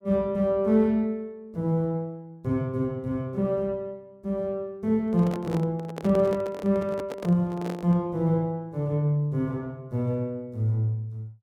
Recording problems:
handling noise; from 5 to 8 s; peak -5 dB vs average level

